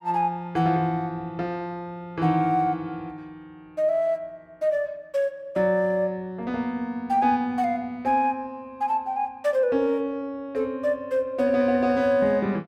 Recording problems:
none

